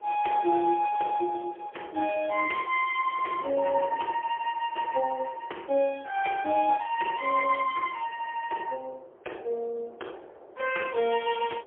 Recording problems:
phone line; 320 Hz to 3.1 kHz, AMR-NB, then MP3
wind on the microphone; below 710 Hz, SNR 22 dB

